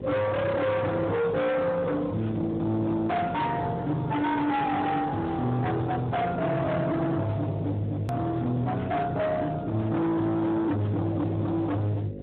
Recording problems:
treble missing; nothing above 4 kHz
lossy codec; Speex, log-spectral distance 3 dB
distorted audio; hard clipping, uneven, signal-to-distortion ratio 6 dB
electrical hum; 50 Hz, harmonics up to 1.4 kHz, SNR 12 dB
edit click; at 8 s

